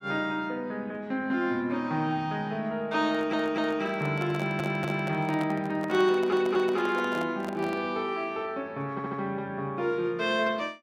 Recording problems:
handling noise; from 3 to 8 s; peak -6 dB vs average level
stutter; 4 times, first at 3 s

